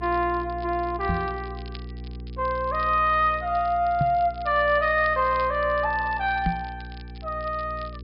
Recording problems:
treble cut off; nothing above 5.5 kHz
hum; 60 Hz, harmonics up to 480 Hz, SNR 15 dB
crackling; vinyl, SNR 26 dB
knock on the microphone; at 1 s, at 4 s and at 6.5 s; peak +1 dB vs average level

